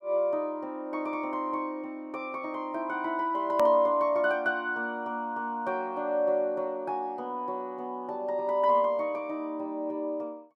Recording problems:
edit click; at 3.5 s

